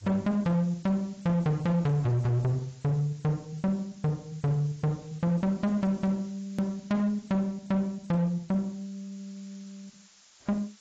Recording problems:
lossy compression; AAC, log-spectral distance 8 dB, nothing above 13.1 kHz
distortion; hard clipping, signal-to-distortion ratio 11 dB
background hiss; slope +2 dB per octave, SNR 27 dB
edit click; at 6.5 s

